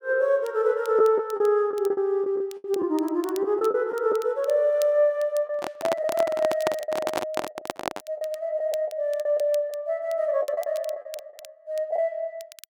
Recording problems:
crackle; vinyl, SNR 23 dB
lost packets; 8% of the sound replaced, filled with the last packet
microphone handling noise; from 5.5 to 8 s; peak +3 dB vs average level

